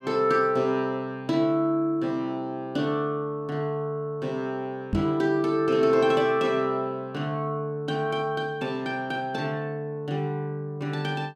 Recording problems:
knock on the microphone; at 5 s; peak +4 dB vs average level

